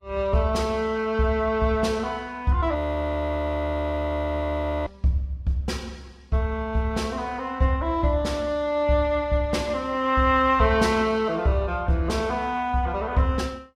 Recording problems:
codec artefacts; Vorbis, log-spectral distance 2 dB, nothing above 15.1 kHz
audio freezing; at 3 s for 2 s

